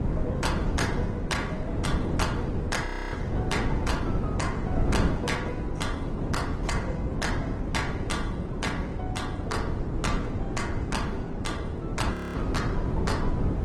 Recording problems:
codec artefacts; AAC, then Opus, log-spectral distance 2 dB, nothing above 17.1 kHz
wind on the microphone; below 280 Hz, SNR -3 dB
audio freezing; at 3 s and at 12 s

